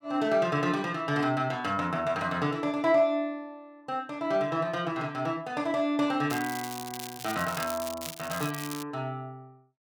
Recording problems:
crackling; from 6.5 to 9 s; loose cable, SNR 10 dB

